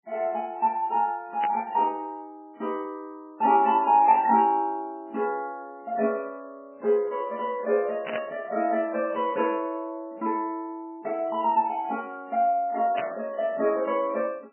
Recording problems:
codec artefacts; MP3, log-spectral distance 2 dB, nothing above 2.8 kHz
burst of static; 4 times, first at 1.5 s; peak -4 dB vs average level

